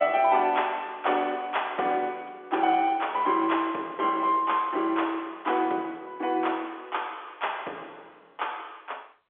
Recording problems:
phone line; 260 Hz to 3.5 kHz, G.711

